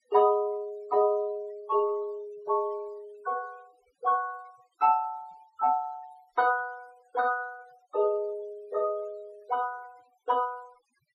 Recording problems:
noise reduction artefacts; signal-to-artefact ratio 27 dB

